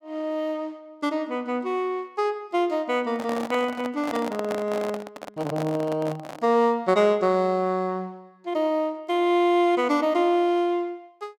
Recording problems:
microphone handling noise; from 3 to 6.5 s; peak -4 dB vs average level

